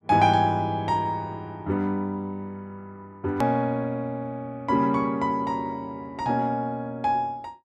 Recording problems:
hard cut with a click; at 3.5 s

